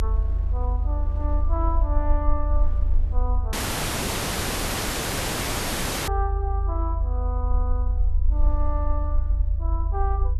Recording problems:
low-frequency rumble; below 74 Hz, SNR -8 dB
wind on the microphone; below 310 Hz, SNR 14 dB
dropout; at 3.5 s for 2.5 s

